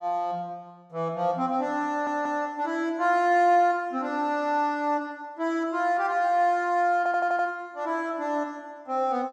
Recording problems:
audio stuttering; at 2 s and at 7 s

